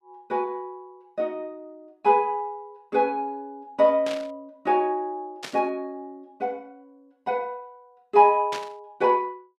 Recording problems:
static burst; at 4 s, at 5.5 s and at 8.5 s; peak -5 dB vs average level

